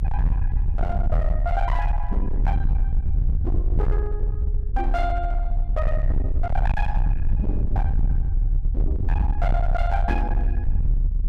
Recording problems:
distorted audio; hard clipping, signal-to-distortion ratio 7 dB
low-frequency rumble; below 64 Hz, strongest tone 34 Hz, SNR -6 dB

